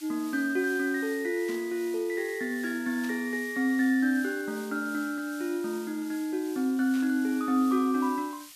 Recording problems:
hiss; slope +5 dB per octave, SNR 18 dB
static burst; at 1.5 s, at 3 s and at 7 s; peak -13 dB vs average level

